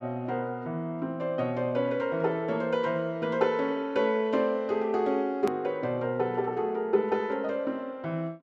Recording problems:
edit click; at 5.5 s

